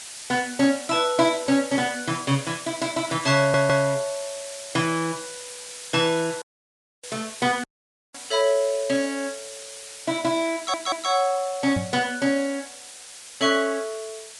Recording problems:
lossy compression; Vorbis, log-spectral distance 14 dB, nothing above 10.1 kHz
hiss; slope +2 dB per octave, SNR 13 dB
stutter; at 3.5 s and at 11 s
audio cutting out; at 6.5 s for 0.5 s and at 7.5 s for 0.5 s
microphone thump; at 12 s; peak -1 dB vs average level

